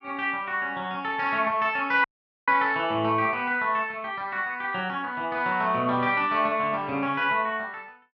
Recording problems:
audio cutting out; at 2 s

